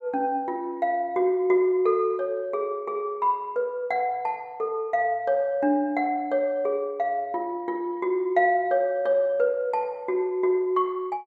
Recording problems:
none

